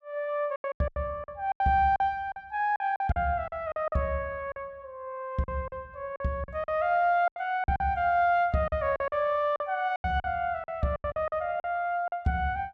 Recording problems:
lost packets; 13% of the sound replaced, filled with silence

